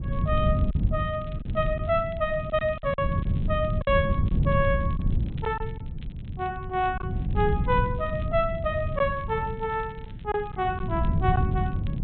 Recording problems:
low-pass filter; nothing above 3.8 kHz
wind on the microphone; below 150 Hz, SNR 1 dB
crackle; vinyl, SNR 27 dB
packet loss; 4% of the sound replaced, filled with silence

